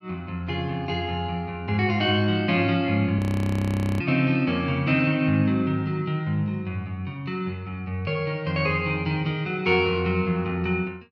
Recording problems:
frozen audio; at 3 s for 1 s

